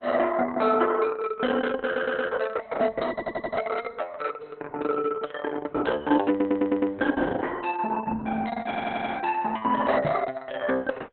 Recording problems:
lossy compression; Opus, log-spectral distance 5 dB, nothing above 4 kHz
stutter; 4 times, first at 2 s
knock on the microphone; at 10 s; peak +4 dB vs average level

